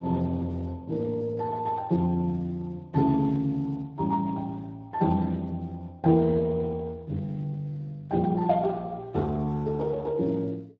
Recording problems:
codec artefacts; Speex, log-spectral distance 2 dB

